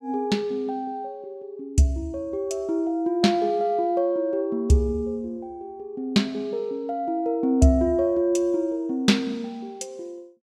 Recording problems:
none

